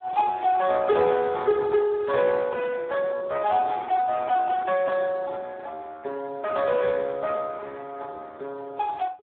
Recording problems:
telephone audio; 300 Hz to 2.5 kHz, Speex

